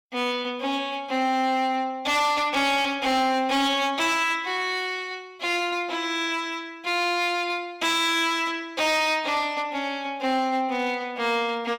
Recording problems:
distorted audio; hard clipping, uneven, signal-to-distortion ratio 12 dB

